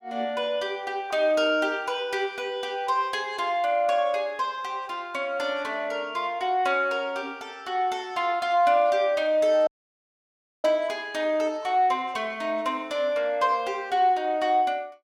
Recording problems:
dropout; at 9.5 s for 1 s

